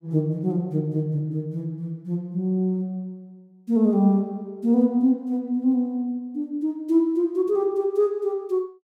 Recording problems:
none

